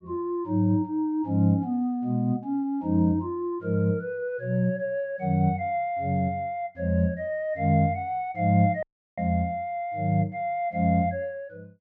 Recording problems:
dropout; at 9 s

